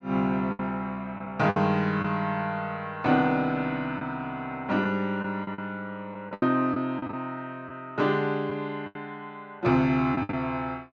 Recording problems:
lost packets; 7% of the sound replaced, filled with the last packet

